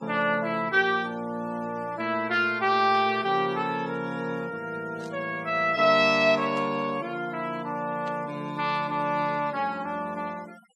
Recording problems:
denoising artefacts; signal-to-artefact ratio 24 dB
static burst; 4 times, first at 3 s; peak -16 dB vs average level

